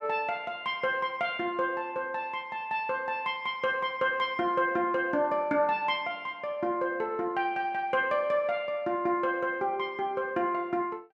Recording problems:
none

